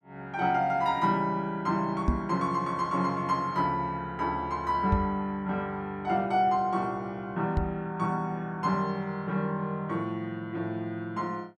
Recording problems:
microphone thump; at 2 s, at 5 s and at 7.5 s; peak +7 dB vs average level

